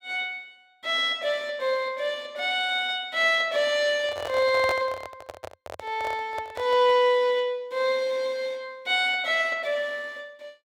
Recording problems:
handling noise; from 4 to 7 s; peak -1 dB vs average level

